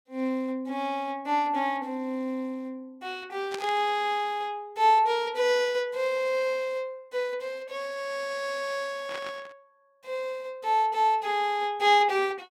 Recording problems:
static burst; at 3.5 s and at 9 s; peak -6 dB vs average level

